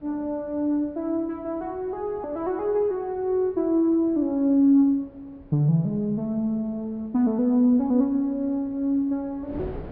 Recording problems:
treble cut off; nothing above 5.5 kHz
wind noise; below 430 Hz, SNR 24 dB

